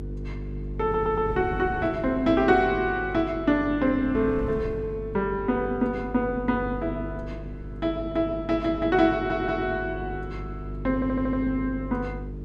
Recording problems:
hum; 50 Hz, harmonics up to 450 Hz, SNR 11 dB
wind on the microphone; below 280 Hz, SNR 18 dB
audio stuttering; at 1 s, at 9 s and at 11 s

